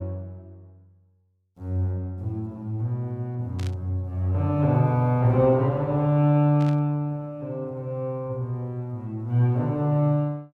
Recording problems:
static burst; at 3.5 s and at 6.5 s; peak -13 dB vs average level

